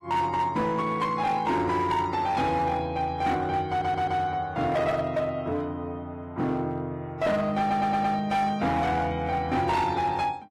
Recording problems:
lossy compression; AAC, log-spectral distance 2 dB, nothing above 13.1 kHz
distorted audio; hard clipping, signal-to-distortion ratio 12 dB
stutter; at 3.5 s and at 7.5 s

